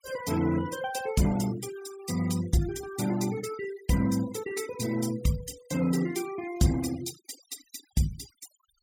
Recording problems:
noise reduction artefacts; signal-to-artefact ratio 15 dB

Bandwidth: 17.5 kHz